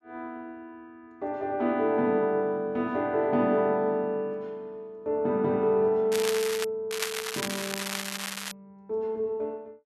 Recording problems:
crackling; at 6 s and from 7 to 8.5 s; loose cable, SNR 5 dB

